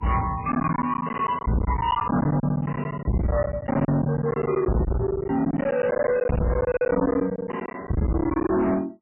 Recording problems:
lossy codec; MP3, log-spectral distance 3 dB, nothing above 3 kHz
distortion; soft clipping, signal-to-distortion ratio 7 dB
lost packets; 17% of the sound replaced, filled with silence

